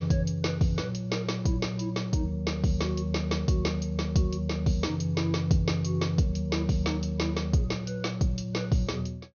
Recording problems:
treble cut off; nothing above 6.5 kHz

